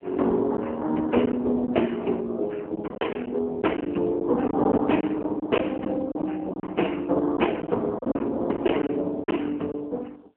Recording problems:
phone line; 220 Hz to 3.1 kHz, AMR-NB
packet loss; 7% of the sound replaced, filled with silence

